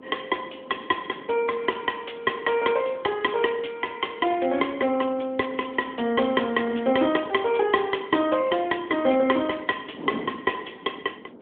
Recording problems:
phone line; 190 Hz to 3.5 kHz, AMR-NB
wind on the microphone; below 480 Hz, SNR 19 dB

